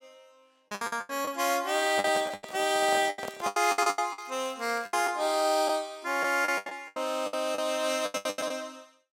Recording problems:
packet loss; 17% of the sound replaced, filled with the last packet
handling noise; from 2 to 3.5 s; peak -2 dB vs average level
crackle; from 2 to 5 s; loose cable, SNR 25 dB

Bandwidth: 16 kHz